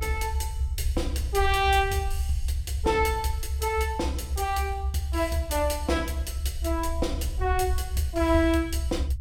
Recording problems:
rumble; below 72 Hz, strongest tone 70 Hz, SNR 3 dB

